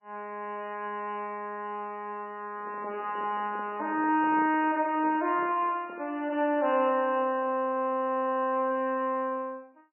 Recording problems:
lossy codec; MP3, log-spectral distance 2 dB, nothing above 2.7 kHz
microphone handling noise; from 2.5 to 6 s; peak -9 dB vs average level

